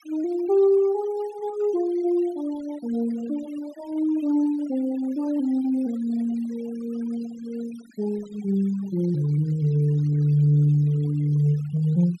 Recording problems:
noise reduction artefacts; signal-to-artefact ratio 24 dB

